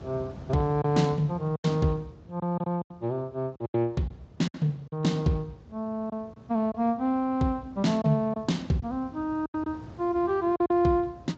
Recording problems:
lossy codec; Speex, log-spectral distance 2 dB, nothing above 7.3 kHz
wind noise; below 330 Hz, SNR 19 dB
lost packets; 7% of the sound replaced, filled with silence

